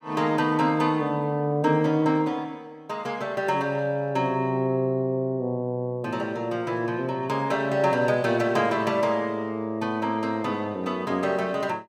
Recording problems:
none

